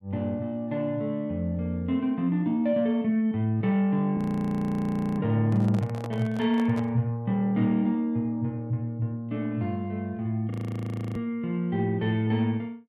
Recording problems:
audio freezing; at 4 s for 1 s and at 11 s for 0.5 s
handling noise; from 5.5 to 7 s; peak -8 dB vs average level

